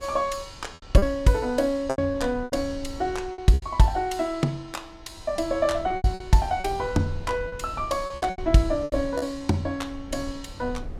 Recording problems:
wind on the microphone; below 96 Hz, SNR 16 dB
lost packets; 9% of the sound replaced, filled with repeated pitch periods

